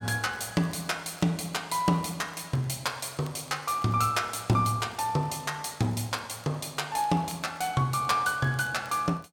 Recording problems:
crackle; vinyl, SNR 28 dB

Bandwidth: 18 kHz